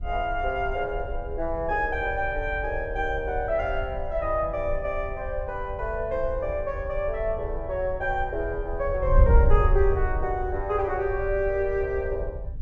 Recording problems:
wind noise; below 68 Hz, SNR 4 dB

